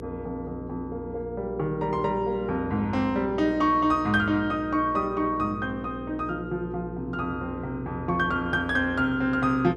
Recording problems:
mains hum; 60 Hz, harmonics up to 480 Hz, SNR 12 dB

